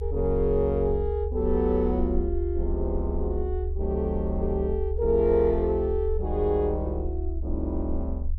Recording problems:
rumble; below 72 Hz, SNR 4 dB

